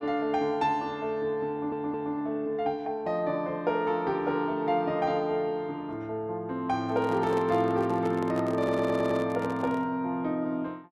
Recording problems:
stutter; at 1.5 s and at 8.5 s
microphone handling noise; from 7 to 10 s; peak -4 dB vs average level

